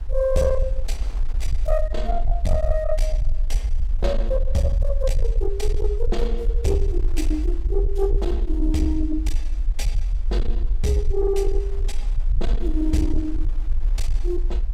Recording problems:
distorted audio; soft clipping, signal-to-distortion ratio 11 dB
rumble; below 46 Hz, strongest tone 20 Hz, SNR 0 dB
wind on the microphone; below 560 Hz, SNR 22 dB

